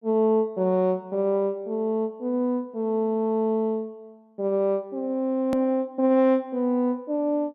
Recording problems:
click at an edit; at 5.5 s

